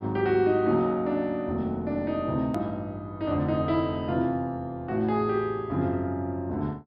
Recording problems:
treble missing; nothing above 5.5 kHz
click at an edit; at 2.5 s

